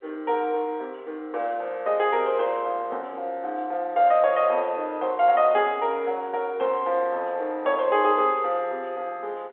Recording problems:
phone line; 340 Hz to 3.7 kHz, G.711

